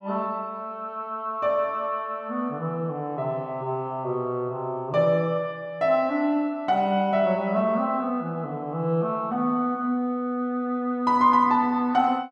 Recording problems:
none

